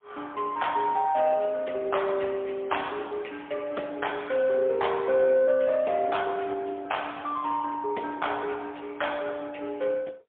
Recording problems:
telephone audio; 300 Hz to 3.4 kHz, AMR-NB, then MP3

